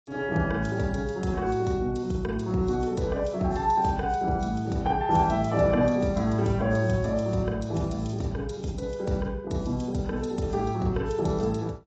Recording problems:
codec artefacts; AAC, log-spectral distance 3 dB, nothing above 7.3 kHz

